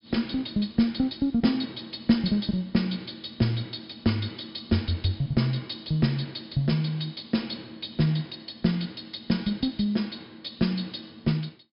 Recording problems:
treble missing; nothing above 5.5 kHz

